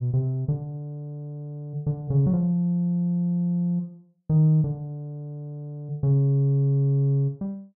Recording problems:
none

